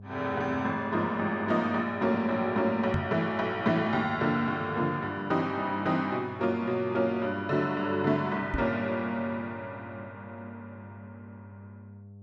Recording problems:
hum; 50 Hz, harmonics up to 600 Hz, SNR 18 dB
microphone bump; at 3 s and at 8.5 s; peak +2 dB vs average level

